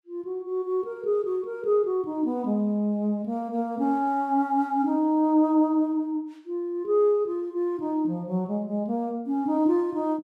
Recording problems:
none

